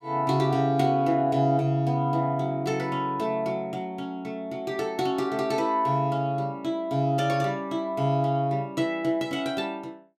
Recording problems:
none

